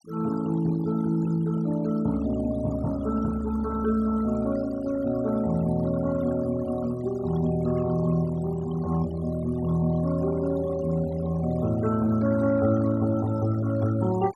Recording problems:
denoising artefacts; signal-to-artefact ratio 18 dB

